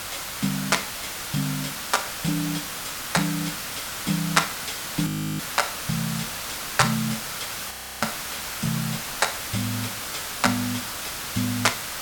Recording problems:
hiss; SNR 3 dB
audio freezing; at 5 s and at 7.5 s

